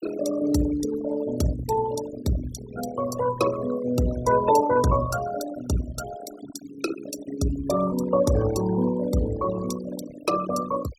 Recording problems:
noise reduction artefacts; signal-to-artefact ratio 11 dB

